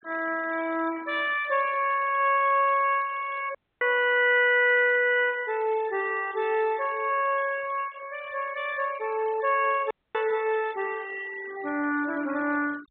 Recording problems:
low-pass filter; nothing above 4 kHz
denoising artefacts; signal-to-artefact ratio 21 dB
audio cutting out; at 3.5 s and at 10 s

